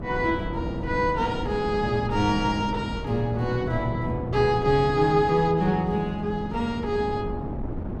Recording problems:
wind on the microphone; below 310 Hz, SNR 8 dB

